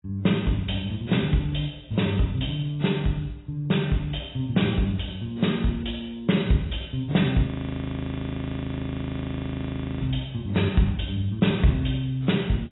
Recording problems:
lossy compression; AAC, log-spectral distance 5 dB, nothing above 3.8 kHz
audio freezing; at 7.5 s for 2.5 s

